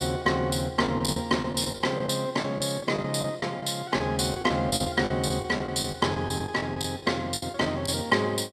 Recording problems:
packet loss; 12% of the sound replaced, filled with the last packet

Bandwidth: 14.5 kHz